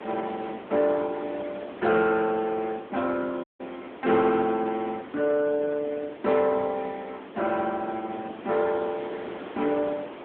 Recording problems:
phone line; 190 Hz to 3.6 kHz, AMR-NB
background hiss; SNR 14 dB
dropout; at 3.5 s

